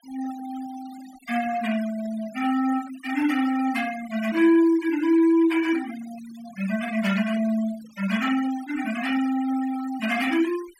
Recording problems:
denoising artefacts; signal-to-artefact ratio 16 dB

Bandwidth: 16 kHz